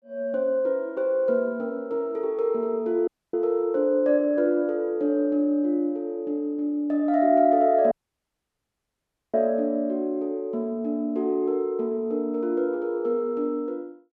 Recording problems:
audio cutting out; at 3 s and at 8 s for 1.5 s

